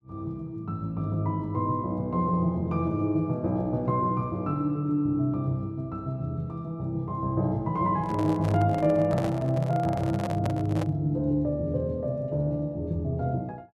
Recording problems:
handling noise; from 8 to 11 s; peak -2 dB vs average level

